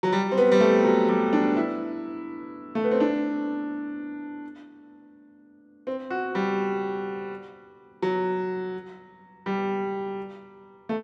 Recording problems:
none

